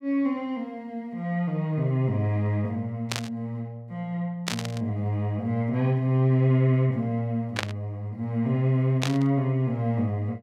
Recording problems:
burst of static; 4 times, first at 3 s; peak +3 dB vs average level

